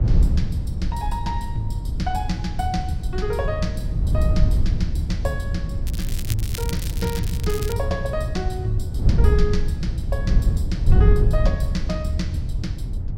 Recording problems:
wind on the microphone; below 96 Hz, SNR -5 dB
crackle; from 6 to 7.5 s; loose cable, SNR 6 dB

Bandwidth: 16.5 kHz